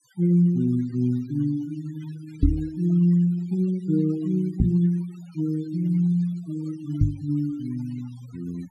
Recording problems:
noise reduction artefacts; signal-to-artefact ratio 25 dB
microphone thump; at 2.5 s, at 4.5 s and at 7 s; peak +8 dB vs average level

